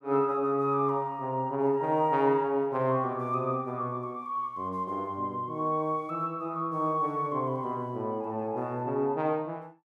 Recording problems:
none

